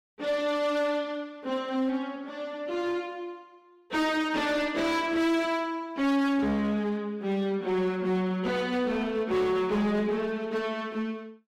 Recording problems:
distorted audio; hard clipping, uneven, signal-to-distortion ratio 10 dB

